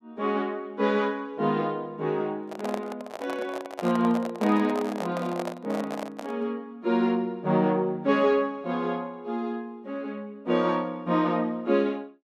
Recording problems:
microphone handling noise; from 2.5 to 6.5 s; peak -2 dB vs average level

